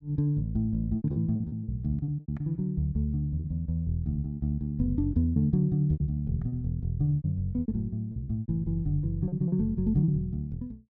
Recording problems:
lost packets; 10% of the sound replaced, filled with repeated pitch periods

